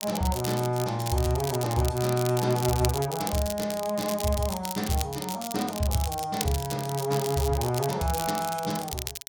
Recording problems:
crackle; vinyl, SNR 8 dB

